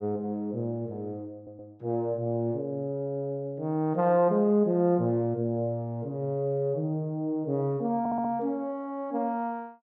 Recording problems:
audio stuttering; at 1.5 s and at 8 s

